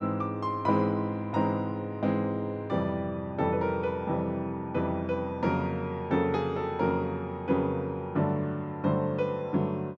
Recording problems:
none

